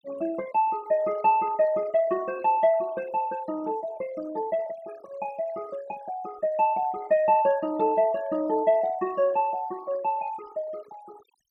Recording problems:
noise reduction artefacts; signal-to-artefact ratio 21 dB

